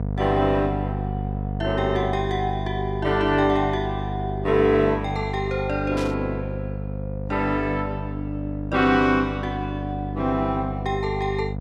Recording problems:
hum; 50 Hz, harmonics up to 750 Hz, SNR 6 dB
burst of static; at 6 s; peak -8 dB vs average level

